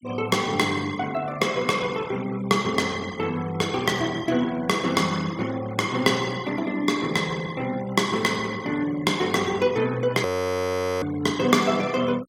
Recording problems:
denoising artefacts; signal-to-artefact ratio 19 dB
audio freezing; at 10 s for 1 s

